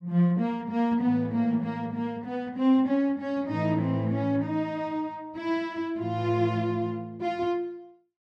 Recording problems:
none

